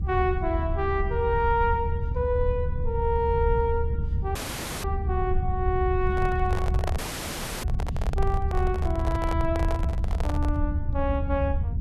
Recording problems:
low-frequency rumble; below 80 Hz, SNR 1 dB
audio cutting out; at 4.5 s and at 7 s for 0.5 s
handling noise; from 6 to 11 s; peak +1 dB vs average level

